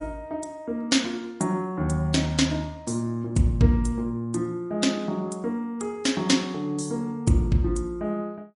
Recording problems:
lossy compression; MP3, log-spectral distance 2 dB, nothing above 10.4 kHz

